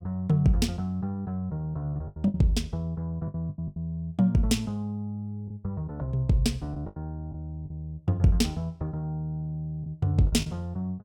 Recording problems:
lost packets; 6% of the sound replaced, filled with the last packet

